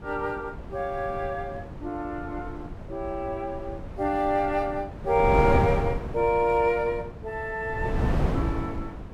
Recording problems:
wind on the microphone; below 320 Hz, SNR 5 dB

